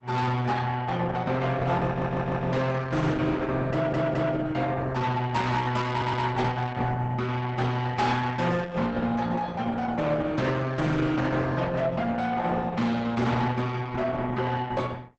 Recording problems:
lossy compression; Opus, log-spectral distance 3 dB, nothing above 8 kHz
distortion; soft clipping, signal-to-distortion ratio 10 dB
audio stuttering; at 2 s, at 3.5 s and at 6 s

